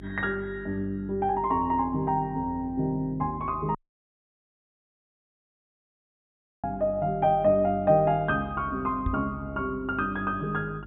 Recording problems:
treble missing; nothing above 4 kHz
hum; 50 Hz, harmonics up to 400 Hz, SNR 18 dB
dropout; at 4 s for 3 s
microphone thump; at 9 s; peak +2 dB vs average level

